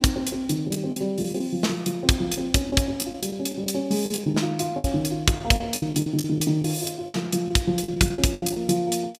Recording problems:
lost packets; 11% of the sound replaced, filled with the last packet

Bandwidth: 15 kHz